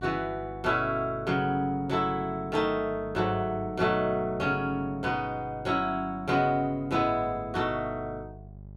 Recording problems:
hum; 50 Hz, harmonics up to 600 Hz, SNR 18 dB

